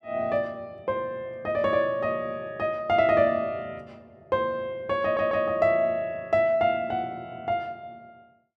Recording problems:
audio stuttering; at 5 s

